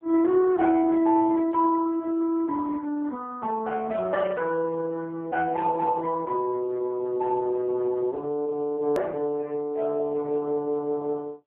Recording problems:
phone line; 190 Hz to 2.2 kHz, AMR-NB
click at an edit; at 9 s

